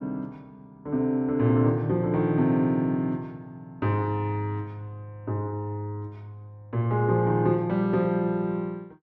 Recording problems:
none

